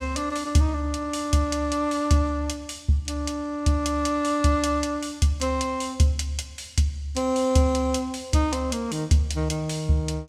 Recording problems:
none

